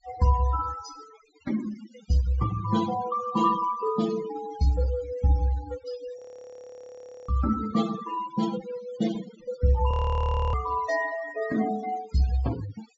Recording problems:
treble missing; nothing above 7.5 kHz
denoising artefacts; signal-to-artefact ratio 15 dB
audio freezing; at 6 s for 1 s and at 10 s for 0.5 s

